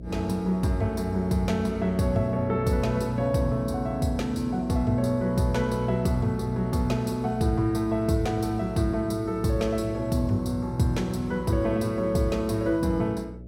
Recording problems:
electrical hum; 60 Hz, harmonics up to 660 Hz, SNR 14 dB

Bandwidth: 16.5 kHz